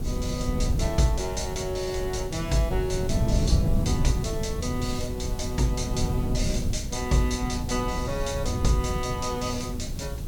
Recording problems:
electrical hum; 60 Hz, harmonics up to 540 Hz, SNR 19 dB
background hiss; SNR 17 dB
wind on the microphone; below 150 Hz, SNR 1 dB

